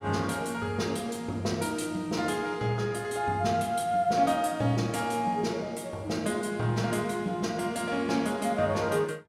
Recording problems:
none

